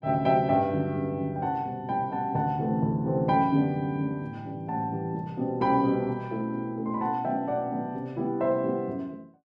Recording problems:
none

